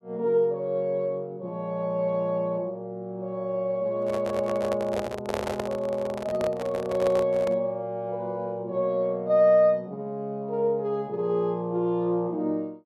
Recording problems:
microphone handling noise; from 4 to 7.5 s; peak +1 dB vs average level

